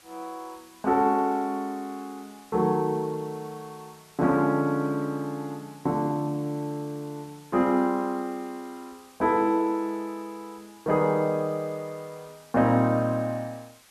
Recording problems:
hiss; slope 0 dB per octave, SNR 26 dB

